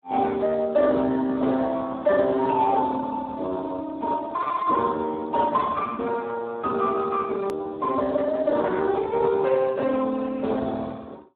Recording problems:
phone line; 220 Hz to 2.1 kHz, Speex
click at an edit; at 7.5 s

